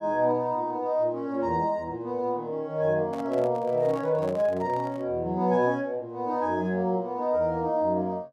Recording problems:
handling noise; from 3 to 5 s; peak -10 dB vs average level

